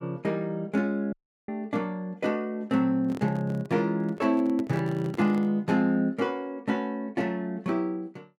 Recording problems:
audio cutting out; at 1 s
microphone handling noise; from 3 to 5.5 s; peak -7 dB vs average level

